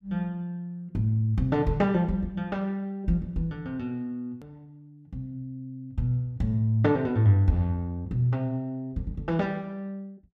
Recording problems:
click at an edit; at 4.5 s

